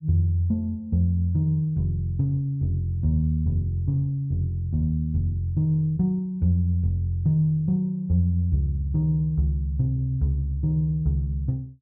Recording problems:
none

